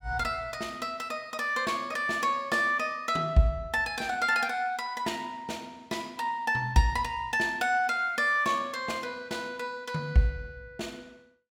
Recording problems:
none

